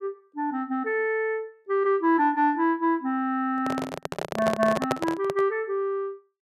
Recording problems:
handling noise; from 3.5 to 5.5 s; peak +3 dB vs average level

